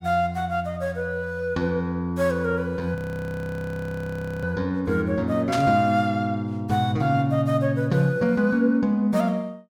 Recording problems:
audio freezing; at 3 s for 1.5 s
static burst; at 5.5 s; peak -3 dB vs average level

